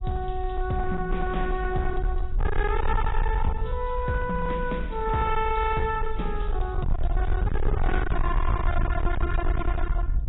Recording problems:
lossy codec; AAC, log-spectral distance 2 dB, nothing above 3.8 kHz
distortion; hard clipping, signal-to-distortion ratio 6 dB
rumble; below 62 Hz, SNR 1 dB

